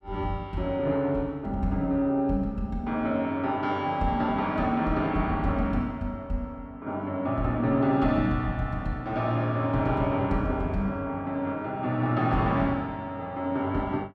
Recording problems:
none

